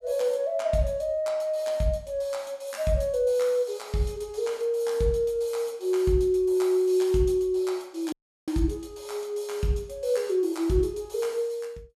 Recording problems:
audio cutting out; at 8 s

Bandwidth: 14.5 kHz